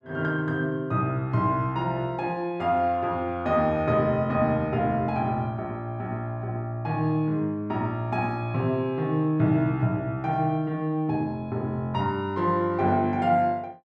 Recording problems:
none

